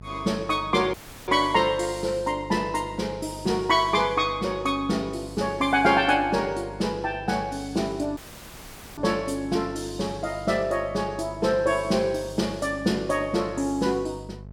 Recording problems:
electrical hum; 50 Hz, harmonics up to 850 Hz, SNR 17 dB
audio cutting out; at 1 s and at 8 s for 1 s

